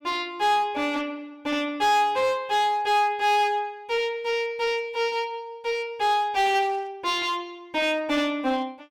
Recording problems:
distortion; hard clipping, uneven, signal-to-distortion ratio 9 dB
static burst; at 6.5 s; peak -13 dB vs average level

